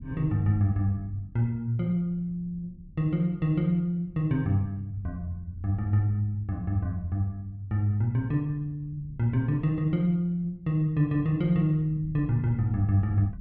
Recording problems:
low-frequency rumble; below 140 Hz, SNR 19 dB

